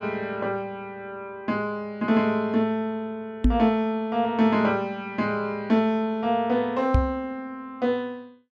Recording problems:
microphone bump; at 3.5 s and at 7 s; peak +8 dB vs average level

